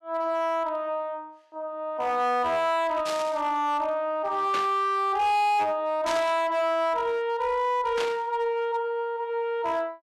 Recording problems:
distortion; hard clipping, signal-to-distortion ratio 11 dB
burst of static; 4 times, first at 3 s; peak -2 dB vs average level

